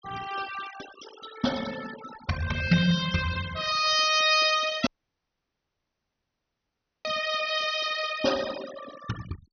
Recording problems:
treble missing; nothing above 6.2 kHz
denoising artefacts; signal-to-artefact ratio 14 dB
audio cutting out; at 5 s for 2 s

